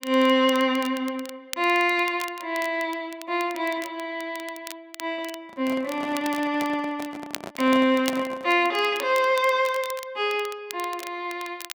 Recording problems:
crackling; vinyl, SNR 16 dB
microphone handling noise; from 5.5 to 8.5 s; peak -8 dB vs average level

